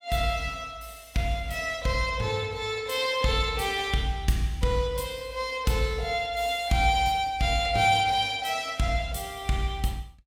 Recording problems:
none

